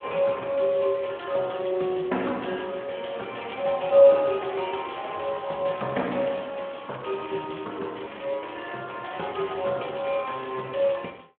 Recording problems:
phone line; 240 Hz to 3.3 kHz, Speex
crackle; from 2.5 to 4 s and from 7 to 9 s; loose cable, SNR 26 dB

